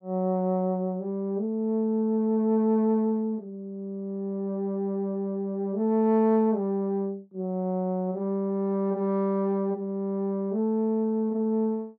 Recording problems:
none

